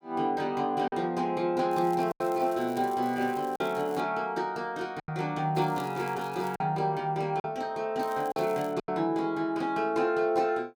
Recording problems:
lost packets; 4% of the sound replaced, filled with silence
crackling; from 1.5 to 4 s, from 5.5 to 6.5 s and at 8 s; loose cable, SNR 22 dB

